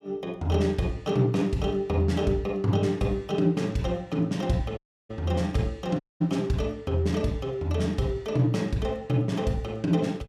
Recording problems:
dropout; at 5 s and at 6 s

